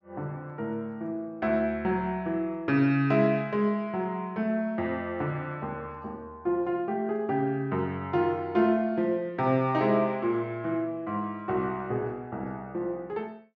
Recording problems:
treble cut off; nothing above 8 kHz

